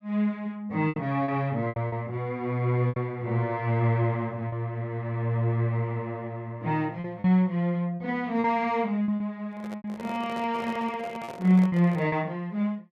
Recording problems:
lost packets; 6% of the sound replaced, filled with repeated pitch periods
microphone handling noise; from 9.5 to 12 s; peak -9 dB vs average level

